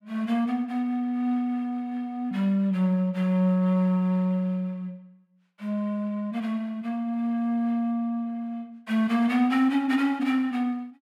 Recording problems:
none

